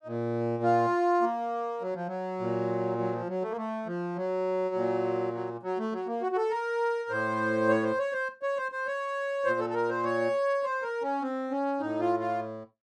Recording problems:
none

